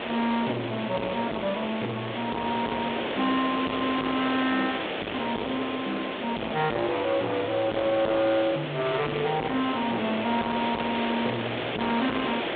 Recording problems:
telephone audio; 190 Hz to 3.7 kHz, G.726
distorted audio; soft clipping, signal-to-distortion ratio 9 dB
hiss; SNR 4 dB

